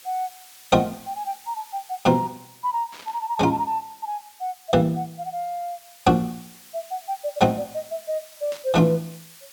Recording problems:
hiss; slope +3 dB per octave, SNR 21 dB
burst of static; at 3 s and at 8.5 s; peak -11 dB vs average level

